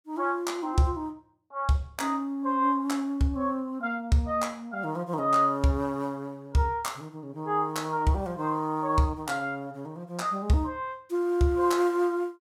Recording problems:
none

